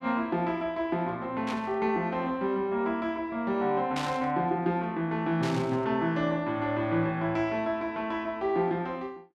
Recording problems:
burst of static; at 1.5 s, at 4 s and at 5.5 s; peak -3 dB vs average level

